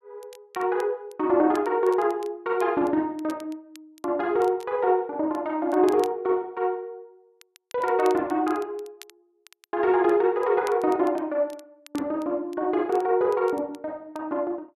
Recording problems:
crackle; vinyl, SNR 26 dB

